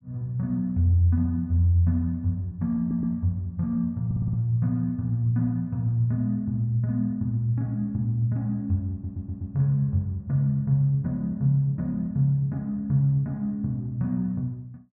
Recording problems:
stutter; at 3 s, at 4 s and at 9 s

